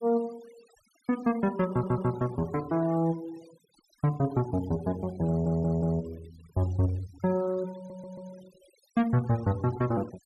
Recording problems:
denoising artefacts; signal-to-artefact ratio 22 dB
stutter; at 1.5 s, at 5.5 s and at 8 s

